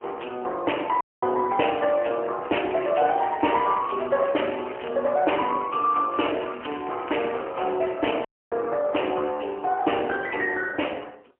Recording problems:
telephone audio; 320 Hz to 3 kHz, AMR-NB, then MP3
dropout; at 1 s and at 8.5 s
crackle; from 2.5 to 5 s and from 6 to 8 s; loose cable, SNR 18 dB

